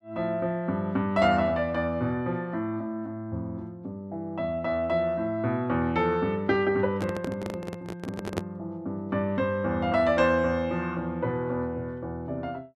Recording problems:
handling noise; from 7 to 8.5 s; peak +2 dB vs average level

